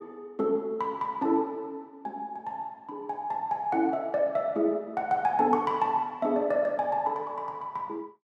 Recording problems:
none

